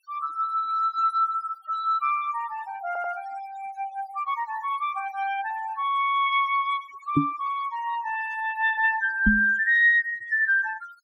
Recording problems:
noise reduction artefacts; signal-to-artefact ratio 20 dB
audio stuttering; at 3 s
microphone thump; at 7 s and at 9.5 s; peak +7 dB vs average level

